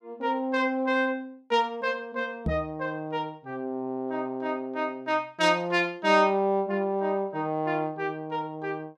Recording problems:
microphone thump; at 2.5 s; peak +1 dB vs average level

